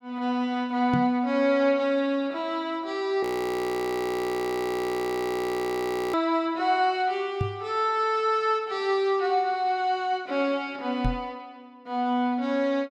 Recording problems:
microphone bump; at 1 s, at 7.5 s and at 11 s; peak +4 dB vs average level
frozen audio; at 3 s for 3 s

